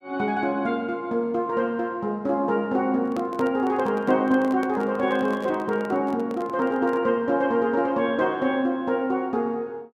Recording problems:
microphone handling noise; from 3 to 7 s; peak -6 dB vs average level

